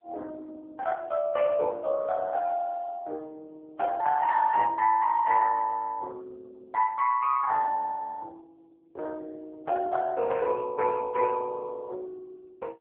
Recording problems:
telephone audio; 340 Hz to 3.5 kHz, AMR-NB

